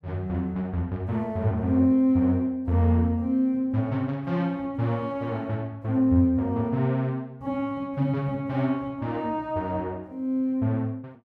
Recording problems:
none

